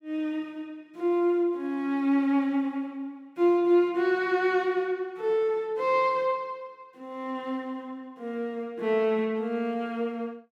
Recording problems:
none

